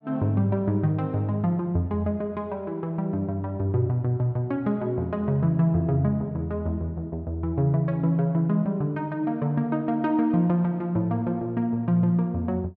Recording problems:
none

